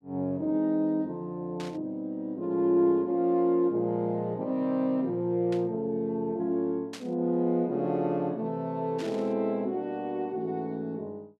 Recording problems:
static burst; 4 times, first at 1.5 s; peak -9 dB vs average level

